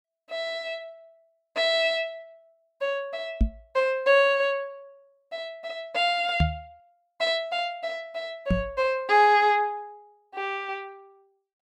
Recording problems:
microphone thump; at 3.5 s, at 6.5 s and at 8.5 s; peak +6 dB vs average level

